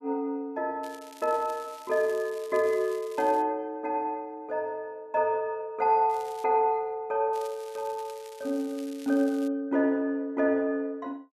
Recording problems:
crackle; from 1 to 3.5 s, at 6 s and from 7.5 to 9.5 s; loose cable, SNR 22 dB

